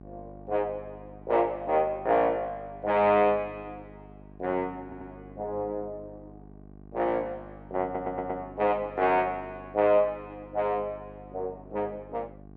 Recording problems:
mains hum; 50 Hz, harmonics up to 850 Hz, SNR 20 dB
stutter; at 5 s and at 8 s

